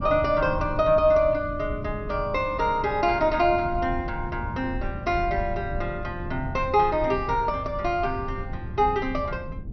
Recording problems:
treble missing; nothing above 5.9 kHz
low-frequency rumble; below 130 Hz, SNR 10 dB

